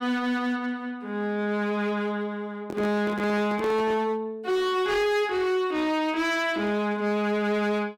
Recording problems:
distorted audio; hard clipping, signal-to-distortion ratio 11 dB
handling noise; from 2.5 to 4 s; peak -4 dB vs average level

